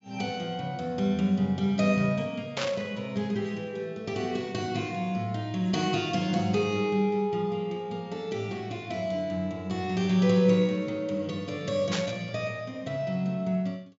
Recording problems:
low-pass filter; nothing above 7.5 kHz
static burst; at 2.5 s and at 12 s; peak +1 dB vs average level

